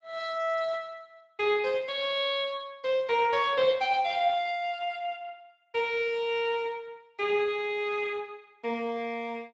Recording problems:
lossy codec; Speex, log-spectral distance 3 dB

